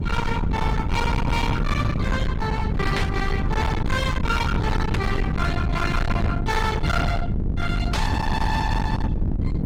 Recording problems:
lossy codec; Opus, log-spectral distance 2 dB, nothing above 20.1 kHz
distortion; hard clipping, uneven, signal-to-distortion ratio 6 dB
electrical hum; 50 Hz, harmonics up to 850 Hz, SNR 6 dB
low-frequency rumble; below 180 Hz, SNR -1 dB
burst of static; at 3 s, at 5 s and at 8 s; peak +1 dB vs average level

